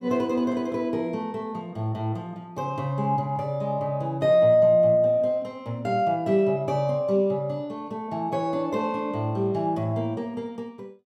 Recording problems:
none

